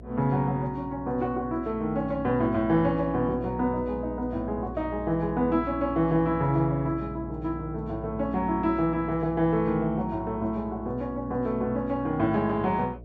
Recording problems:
hum; 60 Hz, harmonics up to 720 Hz, SNR 14 dB

